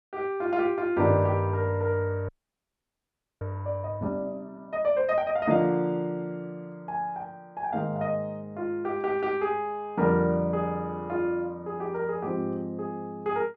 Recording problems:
audio freezing; at 2.5 s for 1 s

